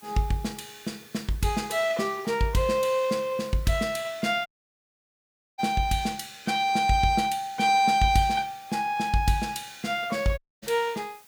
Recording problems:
hiss; slope 0 dB per octave, SNR 26 dB
audio cutting out; at 4.5 s for 1 s and at 10 s

